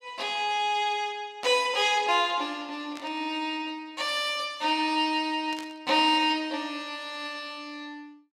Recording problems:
burst of static; at 1.5 s, at 3 s and at 5.5 s; peak -9 dB vs average level

